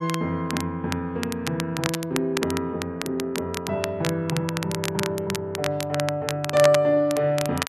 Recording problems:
crackle; vinyl, SNR 8 dB

